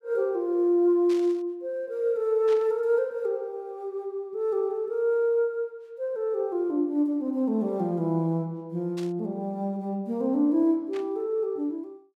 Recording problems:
burst of static; 4 times, first at 1 s; peak -12 dB vs average level

